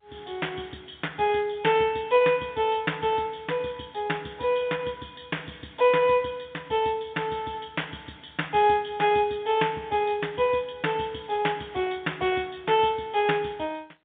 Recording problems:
phone line; 260 Hz to 3.5 kHz, G.711

